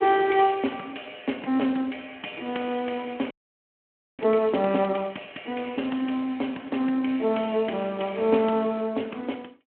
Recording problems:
telephone audio; 240 Hz to 3.3 kHz, Speex
frozen audio; at 3.5 s for 1 s

